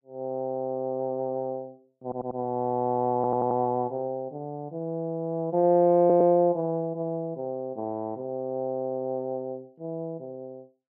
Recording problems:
stutter; at 2 s, at 3 s and at 6 s

